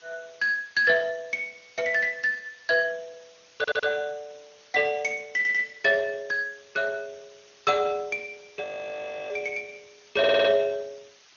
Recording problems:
treble missing; nothing above 6.5 kHz
codec artefacts; Speex, log-spectral distance 11 dB
background hiss; slope +2 dB per octave, SNR 27 dB
stutter; at 3.5 s, at 5.5 s and at 10 s
frozen audio; at 8.5 s for 0.5 s

